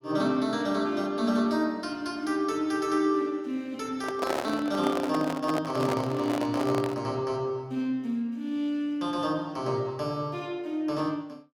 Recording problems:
handling noise; from 4 to 7 s; peak +2 dB vs average level

